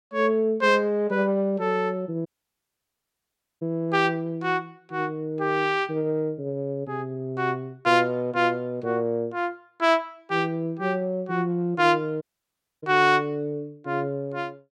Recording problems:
audio cutting out; at 2.5 s for 1.5 s and at 12 s for 0.5 s

